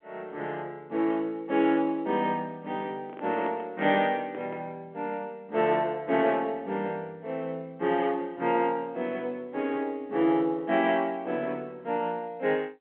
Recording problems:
telephone audio; 220 Hz to 3.4 kHz, G.711
microphone handling noise; from 3 to 4.5 s; peak -5 dB vs average level

